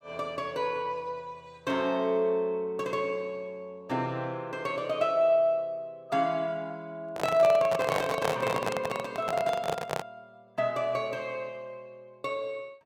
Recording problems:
microphone handling noise; from 7 to 10 s; peak +4 dB vs average level

